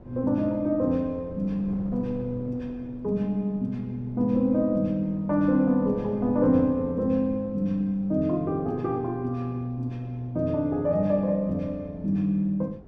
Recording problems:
wind noise; below 370 Hz, SNR 19 dB

